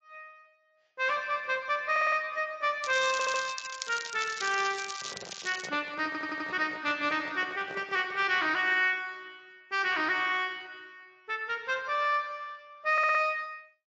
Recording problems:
codec artefacts; Speex, then MP3, log-spectral distance 7 dB
audio stuttering; 4 times, first at 2 s
crackling; at 3 s and from 3.5 to 5.5 s; loose cable, SNR 9 dB
handling noise; from 5 to 8.5 s; peak -11 dB vs average level

